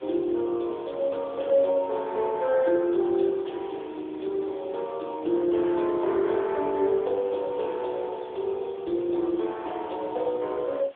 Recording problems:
telephone audio; 280 Hz to 3.5 kHz, AMR-NB
background hiss; SNR 27 dB

